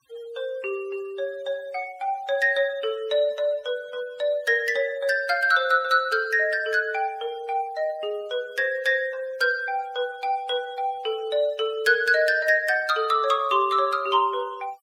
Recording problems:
noise reduction artefacts; signal-to-artefact ratio 26 dB

